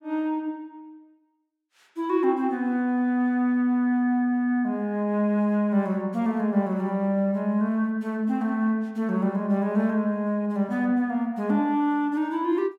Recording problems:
none

